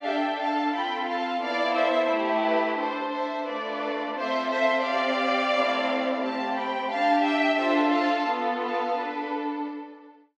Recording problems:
none

